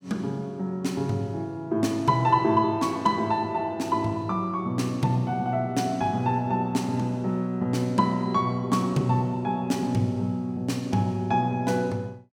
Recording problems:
none

